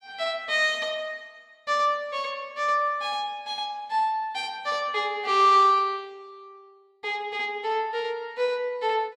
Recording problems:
none

